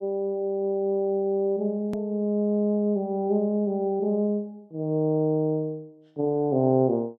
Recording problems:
click at an edit; at 2 s

